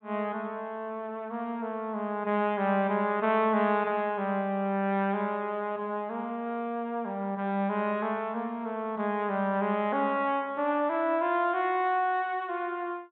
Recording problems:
treble cut off; nothing above 4 kHz

